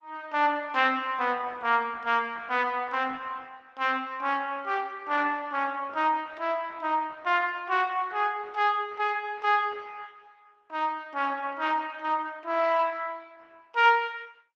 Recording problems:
codec artefacts; Opus, log-spectral distance 3 dB

